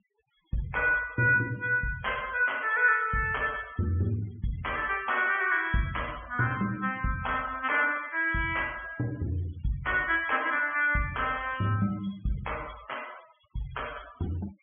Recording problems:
low-pass filter; nothing above 3.4 kHz
noise reduction artefacts; signal-to-artefact ratio 20 dB

